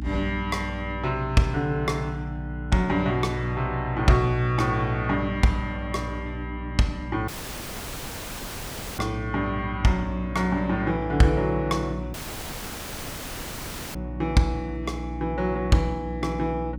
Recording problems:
hum; 60 Hz, harmonics up to 300 Hz, SNR 9 dB
dropout; at 7.5 s for 1.5 s and at 12 s for 2 s

